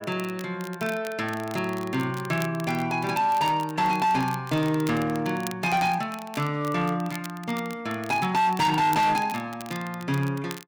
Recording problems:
distorted audio; hard clipping, signal-to-distortion ratio 10 dB
crackle; vinyl, SNR 18 dB

